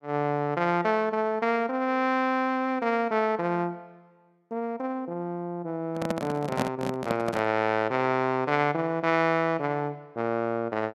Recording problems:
microphone handling noise; from 6 to 7.5 s; peak +2 dB vs average level

